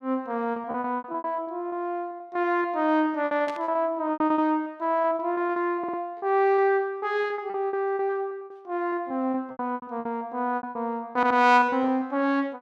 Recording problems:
packet loss; 18% of the sound replaced, filled with repeated pitch periods
burst of static; at 3.5 s; peak -9 dB vs average level
audio stuttering; at 6 s and at 11 s

